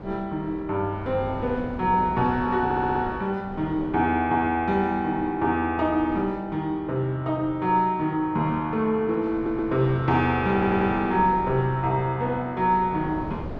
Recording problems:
wind noise; below 530 Hz, SNR 15 dB
audio stuttering; at 2.5 s, at 9.5 s and at 11 s

